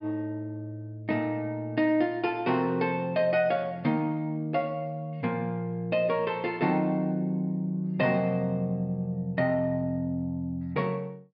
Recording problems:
treble cut off; nothing above 5.5 kHz

